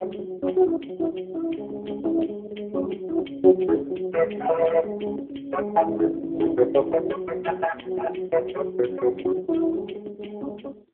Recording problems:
phone line; 280 Hz to 2 kHz, AMR-NB

